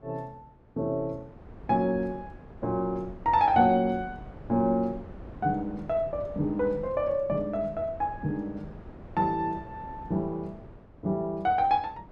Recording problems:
wind noise; below 400 Hz, SNR 18 dB

